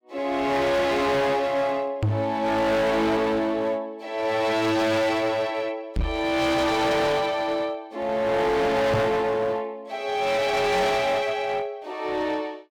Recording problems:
distortion; hard clipping, uneven, signal-to-distortion ratio 6 dB
microphone bump; at 2 s, at 6 s and at 9 s; peak +5 dB vs average level

